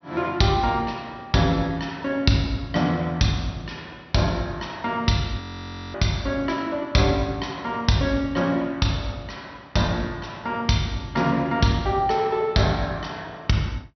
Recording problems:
treble missing; nothing above 6 kHz
frozen audio; at 5.5 s for 0.5 s

